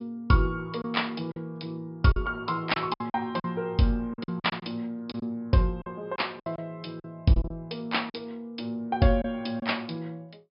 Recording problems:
treble cut off; nothing above 5.5 kHz
lost packets; 8% of the sound replaced, filled with silence

